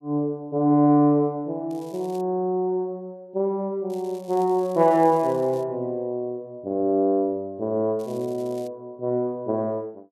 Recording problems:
crackling; at 1.5 s, from 4 to 5.5 s and at 8 s; loose cable, SNR 27 dB

